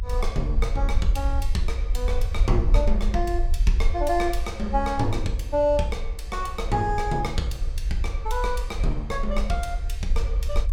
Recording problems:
low-frequency rumble; below 52 Hz, SNR 1 dB

